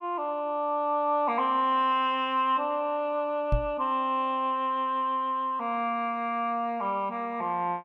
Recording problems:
knock on the microphone; at 3.5 s; peak +4 dB vs average level

